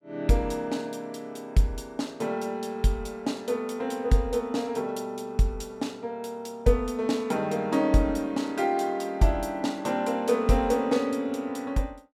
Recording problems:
none

